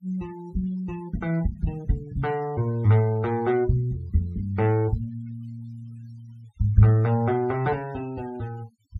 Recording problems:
noise reduction artefacts; signal-to-artefact ratio 26 dB

